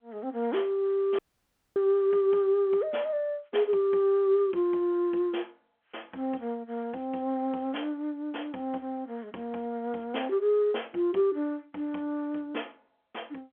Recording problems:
phone line; 280 Hz to 3.3 kHz, G.711
dropout; at 1 s for 0.5 s

